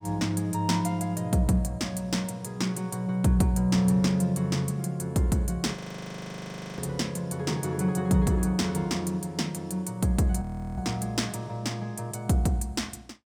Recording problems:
audio freezing; at 6 s for 1 s and at 10 s

